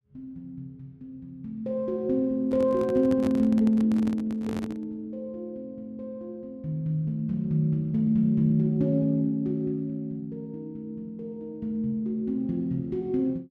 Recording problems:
handling noise; from 2.5 to 5 s; peak -3 dB vs average level

